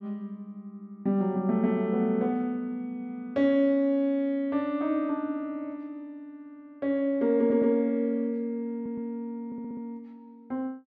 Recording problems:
stutter; at 7.5 s, at 8.5 s and at 9.5 s

